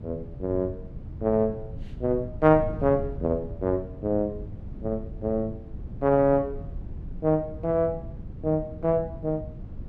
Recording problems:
wind noise; below 150 Hz, SNR 12 dB

